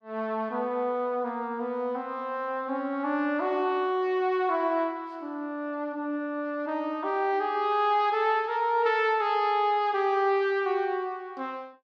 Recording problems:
none

